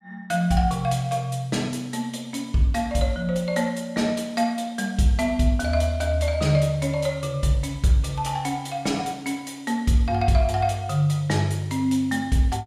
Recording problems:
none

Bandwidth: 14.5 kHz